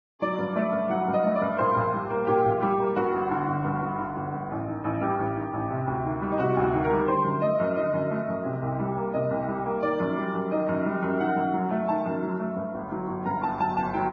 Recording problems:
lossy compression; Vorbis, log-spectral distance 2 dB, nothing above 6.2 kHz

